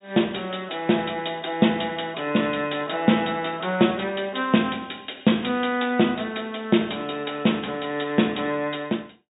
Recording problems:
low-pass filter; nothing above 4 kHz

